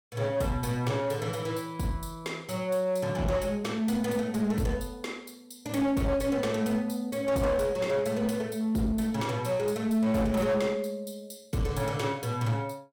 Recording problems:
distortion; hard clipping, uneven, signal-to-distortion ratio 11 dB

